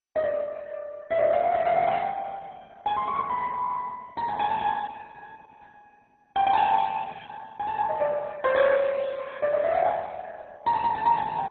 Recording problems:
lossy compression; Opus, then MP2, log-spectral distance 4 dB

